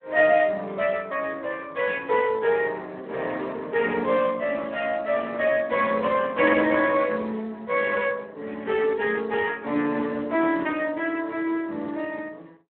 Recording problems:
phone line; 260 Hz to 3.4 kHz, Speex

